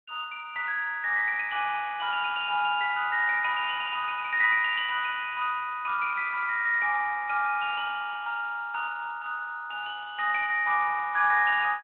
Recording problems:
telephone audio; 300 Hz to 3.4 kHz, Speex

